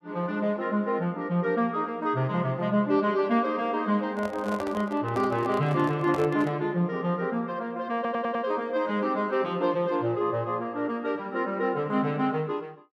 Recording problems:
handling noise; from 4 to 6.5 s; peak -4 dB vs average level
stutter; at 8 s

